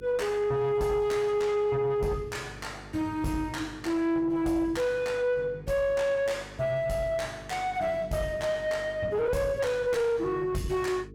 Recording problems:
distorted audio; soft clipping, signal-to-distortion ratio 10 dB
mains hum; 50 Hz, harmonics up to 450 Hz, SNR 20 dB

